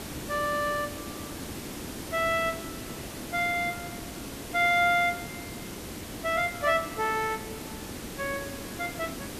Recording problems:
background hiss; SNR 10 dB

